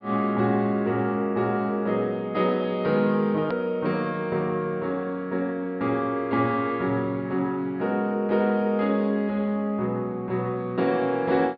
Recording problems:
treble cut off; nothing above 5.2 kHz
click at an edit; at 3.5 s

